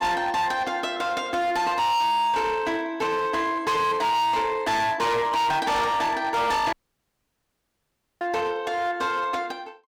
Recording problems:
distorted audio; hard clipping, signal-to-distortion ratio 8 dB
audio cutting out; at 6.5 s for 1.5 s

